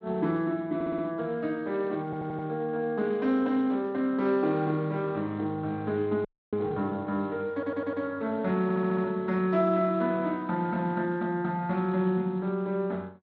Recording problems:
lossy compression; Speex, log-spectral distance 2 dB
audio stuttering; 4 times, first at 1 s
frozen audio; at 6.5 s

